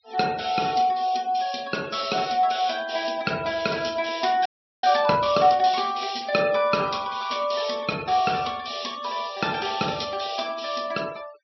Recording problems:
treble missing; nothing above 5.8 kHz
noise reduction artefacts; signal-to-artefact ratio 20 dB
frozen audio; at 4.5 s

